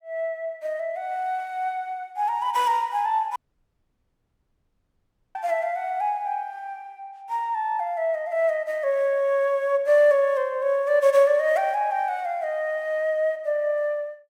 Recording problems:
dropout; at 3.5 s for 2 s

